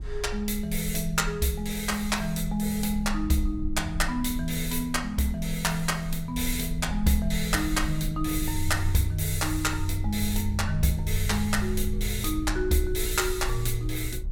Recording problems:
low-frequency rumble; below 54 Hz, SNR 8 dB

